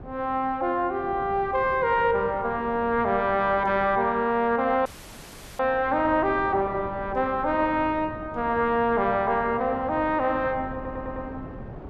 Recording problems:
wind on the microphone; below 440 Hz, SNR 17 dB
audio cutting out; at 5 s for 0.5 s
audio stuttering; at 11 s

